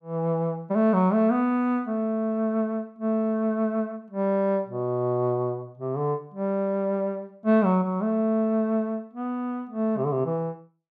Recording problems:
none

